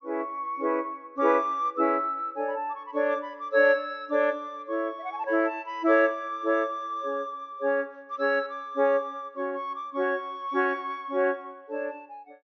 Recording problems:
treble cut off; nothing above 6.3 kHz

